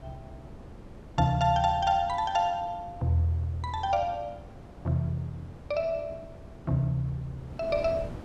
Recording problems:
wind on the microphone; below 400 Hz, SNR 17 dB

